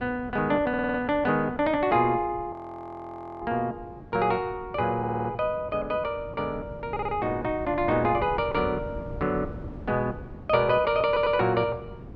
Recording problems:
wind on the microphone; below 280 Hz, SNR 16 dB
stutter; 4 times, first at 0.5 s
audio freezing; at 2.5 s for 1 s

